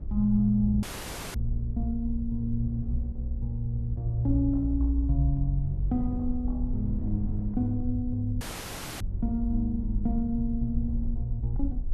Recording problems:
rumble; below 54 Hz, SNR 8 dB
wind noise; below 200 Hz, SNR 16 dB
audio cutting out; at 1 s for 0.5 s and at 8.5 s for 0.5 s

